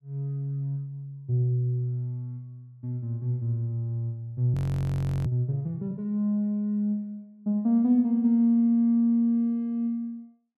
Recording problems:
audio freezing; at 4.5 s for 0.5 s

